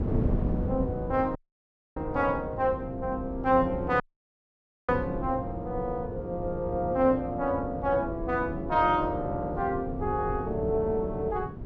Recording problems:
wind noise; below 240 Hz, SNR 8 dB
dropout; at 1.5 s for 0.5 s and at 4 s for 1 s

